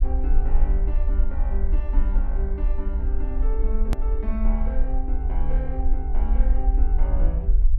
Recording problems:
rumble; below 46 Hz, SNR -10 dB
edit click; at 4 s

